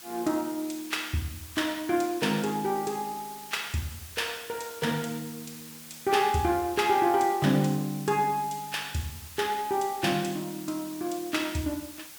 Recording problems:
background hiss; slope +1 dB per octave, SNR 14 dB

